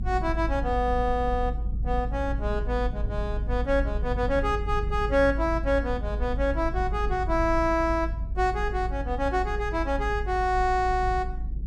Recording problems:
rumble; below 56 Hz, strongest tone 52 Hz, SNR 4 dB

